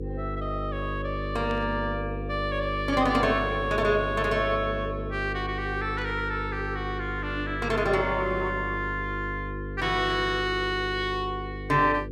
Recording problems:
electrical hum; 50 Hz, harmonics up to 500 Hz, SNR 7 dB
burst of static; 4 times, first at 1.5 s; peak -13 dB vs average level

